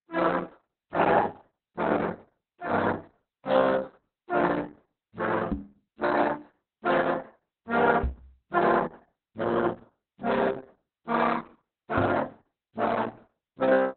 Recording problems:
lossy compression; Opus, then Opus, log-spectral distance 5 dB, nothing above 4 kHz
knock on the microphone; at 5.5 s, at 8 s and at 12 s; peak +3 dB vs average level

